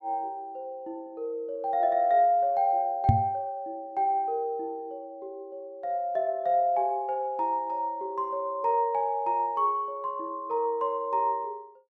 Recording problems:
microphone bump; at 3 s; peak +10 dB vs average level

